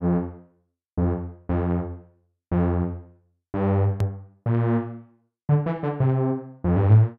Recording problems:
click at an edit; at 4 s

